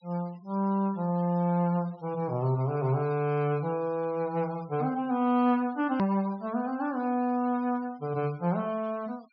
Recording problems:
low-pass filter; nothing above 5.5 kHz
noise reduction artefacts; signal-to-artefact ratio 27 dB
edit click; at 6 s

